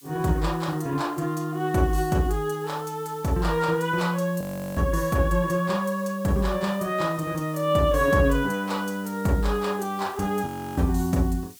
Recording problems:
hiss; slope +6 dB per octave, SNR 22 dB
frozen audio; at 4.5 s and at 10 s

